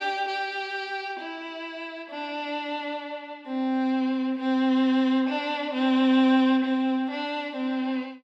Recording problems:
none

